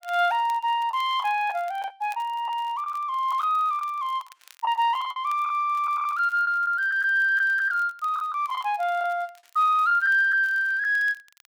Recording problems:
crackle; vinyl, SNR 30 dB
packet loss; 7% of the sound replaced, filled with the last packet

